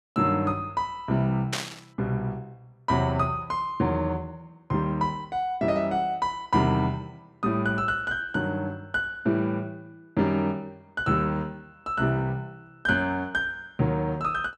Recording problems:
burst of static; at 1.5 s; peak +2 dB vs average level

